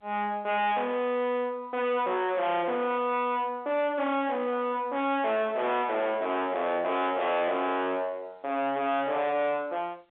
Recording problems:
phone line; 300 Hz to 3.6 kHz, G.711
distorted audio; soft clipping, signal-to-distortion ratio 6 dB

